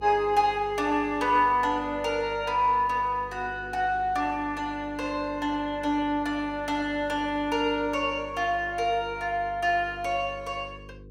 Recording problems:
hum; 50 Hz, harmonics up to 500 Hz, SNR 20 dB

